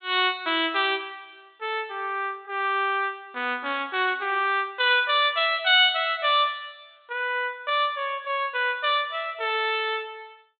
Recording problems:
treble missing; nothing above 4 kHz

